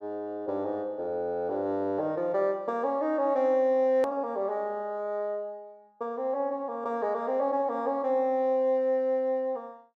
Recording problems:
hard cut with a click; at 4 s

